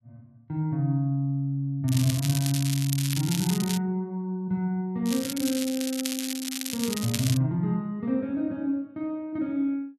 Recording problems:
crackling; from 2 to 4 s and from 5 to 7.5 s; loose cable, SNR 5 dB

